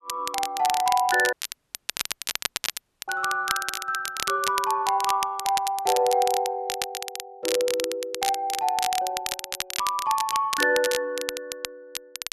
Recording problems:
crackling; vinyl, SNR 6 dB
audio cutting out; at 1.5 s for 2 s

